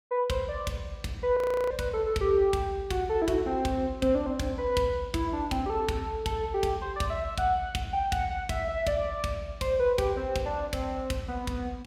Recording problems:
frozen audio; at 1.5 s

